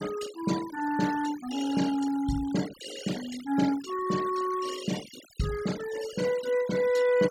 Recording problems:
noise reduction artefacts; signal-to-artefact ratio 14 dB

